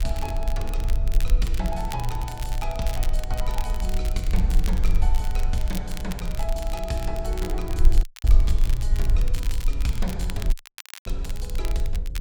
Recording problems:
hum; 60 Hz, harmonics up to 540 Hz, SNR 16 dB
rumble; below 48 Hz, SNR -6 dB
wind noise; below 200 Hz, SNR 15 dB
crackle; vinyl, SNR 8 dB
audio cutting out; at 8 s and at 11 s for 0.5 s

